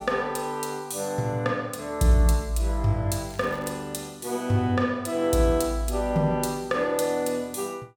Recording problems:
crackling; at 3.5 s; loose cable, SNR 25 dB

